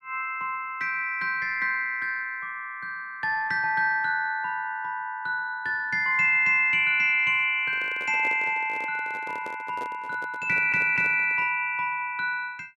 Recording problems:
handling noise; from 7.5 to 12 s; peak -11 dB vs average level
stutter; at 10 s

